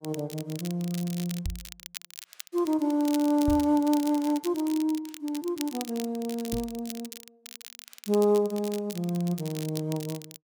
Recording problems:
crackling; vinyl, SNR 14 dB
knock on the microphone; at 1.5 s, at 3.5 s and at 6.5 s; peak 0 dB vs average level

